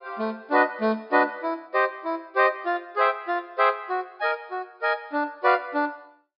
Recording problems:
treble missing; nothing above 5.5 kHz

